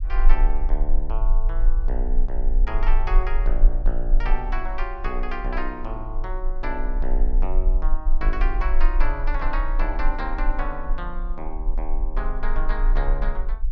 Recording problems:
rumble; below 34 Hz, strongest tone 20 Hz, SNR -6 dB

